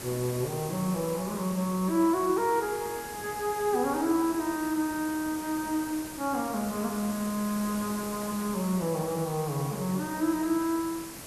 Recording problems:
background hiss; slope -3 dB per octave, SNR 10 dB

